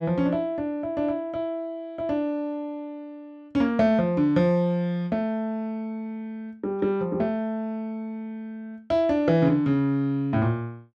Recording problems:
none

